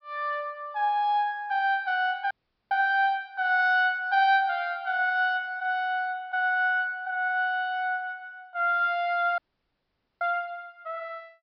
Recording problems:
low-pass filter; nothing above 5.5 kHz
audio cutting out; at 2.5 s and at 9.5 s for 1 s

